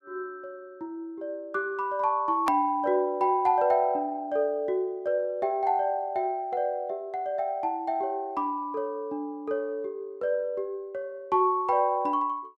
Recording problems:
hard cut with a click; at 2.5 s

